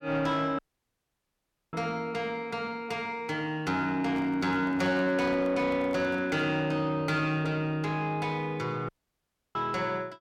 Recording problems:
distorted audio; soft clipping, signal-to-distortion ratio 11 dB
dropout; at 0.5 s for 1 s and at 9 s for 0.5 s
handling noise; from 4 to 6.5 s; peak -11 dB vs average level

